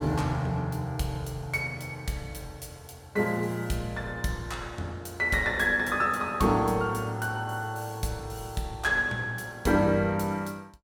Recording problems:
none

